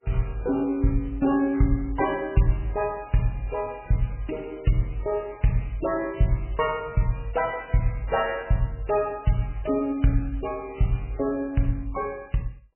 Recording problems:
lossy compression; MP3, log-spectral distance 3 dB, nothing above 2.8 kHz

